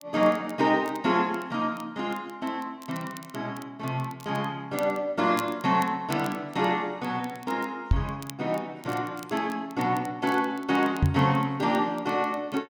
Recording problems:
crackle; vinyl, SNR 21 dB
microphone bump; at 8 s and at 11 s; peak +9 dB vs average level

